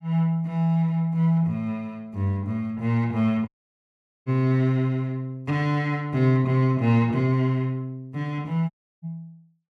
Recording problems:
dropout; at 3.5 s for 1 s and at 8.5 s

